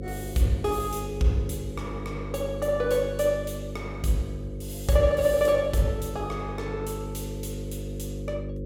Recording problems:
hum; 50 Hz, harmonics up to 550 Hz, SNR 8 dB

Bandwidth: 16.5 kHz